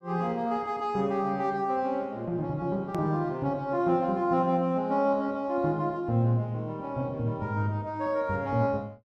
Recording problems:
edit click; at 3 s

